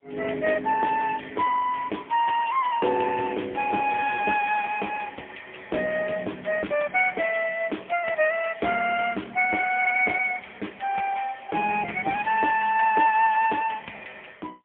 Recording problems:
phone line; 320 Hz to 3.3 kHz, AMR-NB, then MP3

